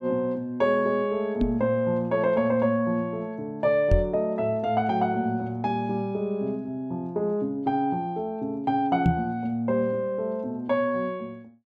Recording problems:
knock on the microphone; at 1.5 s, at 4 s and at 9 s; peak +7 dB vs average level

